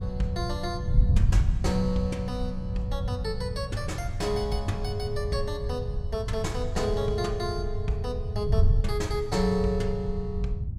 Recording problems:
wind noise; below 100 Hz, SNR 0 dB

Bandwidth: 15.5 kHz